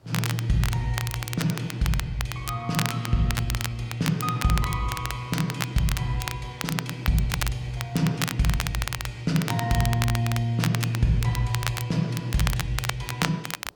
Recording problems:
background hiss; SNR 30 dB
crackle; vinyl, SNR 6 dB

